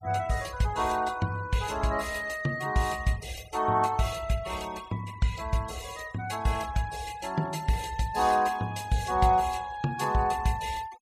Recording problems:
denoising artefacts; signal-to-artefact ratio 20 dB

